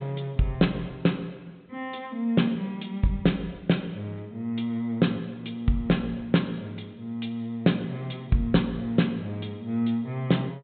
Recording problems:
treble missing; nothing above 4 kHz

